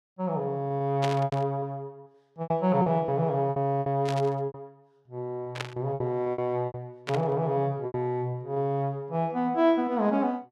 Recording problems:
lost packets; 10% of the sound replaced, filled with repeated pitch periods
burst of static; 4 times, first at 1 s; peak -1 dB vs average level

